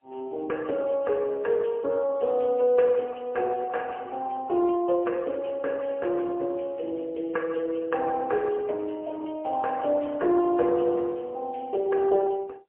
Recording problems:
phone line; 340 Hz to 3.2 kHz, AMR-NB, then MP3

